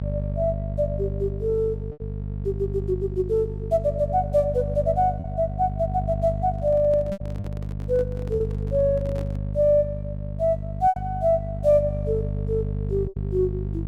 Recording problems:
hum; 50 Hz, harmonics up to 450 Hz, SNR 6 dB
lost packets; 3% of the sound replaced, filled with repeated pitch periods
handling noise; from 6.5 to 9.5 s; peak -11 dB vs average level

